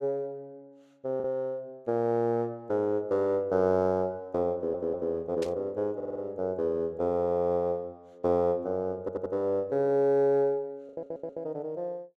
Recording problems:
packet loss; 1.2% of the sound replaced, filled with the last packet
stutter; 4 times, first at 4.5 s
burst of static; at 5.5 s; peak -8 dB vs average level

